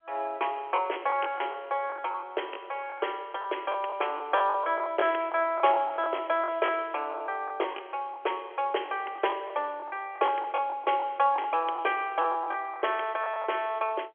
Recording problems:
phone line; 300 Hz to 3.3 kHz, G.711
packet loss; 10% of the sound replaced, filled with the last packet

